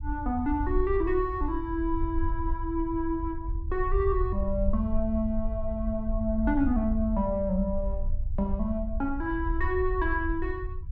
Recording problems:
rumble; below 64 Hz, SNR 4 dB

